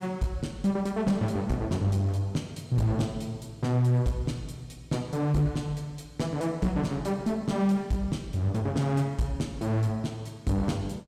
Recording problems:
distortion; hard clipping, uneven, signal-to-distortion ratio 10 dB

